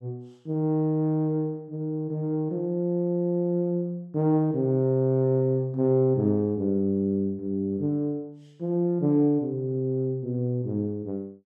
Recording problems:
none

